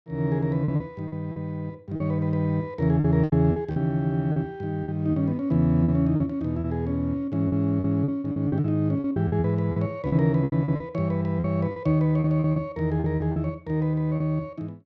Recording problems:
packet loss; 12% of the sound replaced, filled with repeated pitch periods

